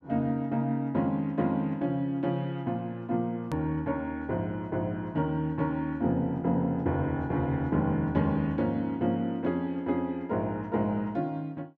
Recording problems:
hard cut with a click; at 3.5 s

